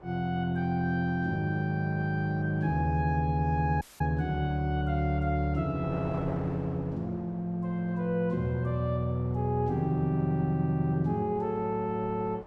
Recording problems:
wind on the microphone; below 800 Hz, SNR 18 dB
dropout; at 4 s

